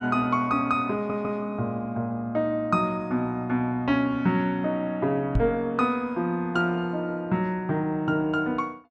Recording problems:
audio stuttering; at 1 s
microphone bump; at 5.5 s; peak +5 dB vs average level

